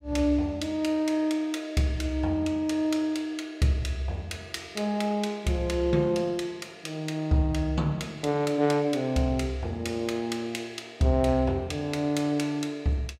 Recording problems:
none

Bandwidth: 16 kHz